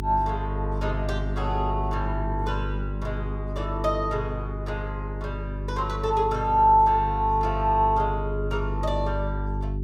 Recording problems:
hum; 50 Hz, harmonics up to 400 Hz, SNR 5 dB

